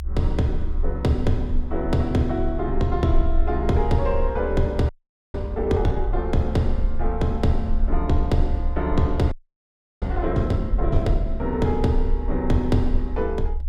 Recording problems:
rumble; below 66 Hz, strongest tone 26 Hz, SNR 4 dB
audio freezing; at 5 s and at 9.5 s for 0.5 s

